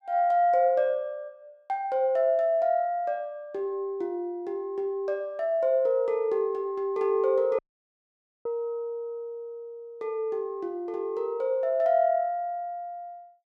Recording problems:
audio cutting out; at 7.5 s for 1 s

